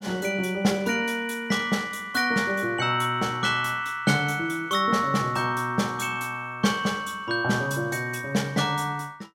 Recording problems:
none

